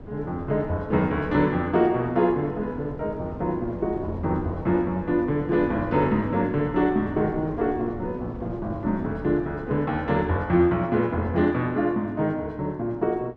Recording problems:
wind on the microphone; below 370 Hz, SNR 14 dB

